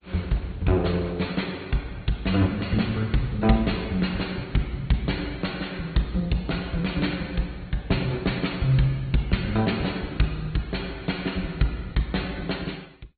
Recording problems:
treble missing; nothing above 4.3 kHz
lossy codec; Opus, then MP2, log-spectral distance 5 dB

